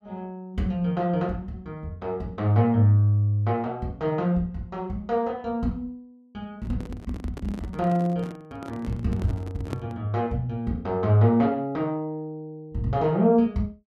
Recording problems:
microphone handling noise; from 6.5 to 10 s; peak -4 dB vs average level

